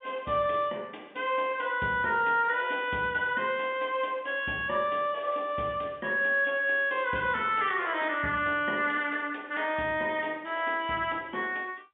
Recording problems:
phone line; 130 Hz to 3.5 kHz, G.711

